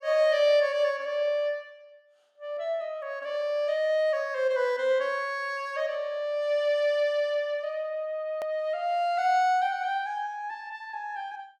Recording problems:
hard cut with a click; at 8.5 s

